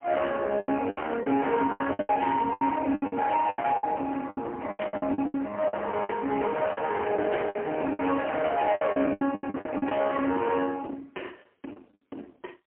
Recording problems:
telephone audio; 240 Hz to 3.1 kHz, AMR-NB, then MP3
distortion; soft clipping, signal-to-distortion ratio 12 dB
packet loss; 16% of the sound replaced, filled with the last packet

